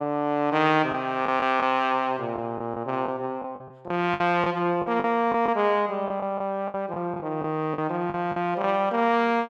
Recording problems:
lost packets; 9% of the sound replaced, filled with the last packet

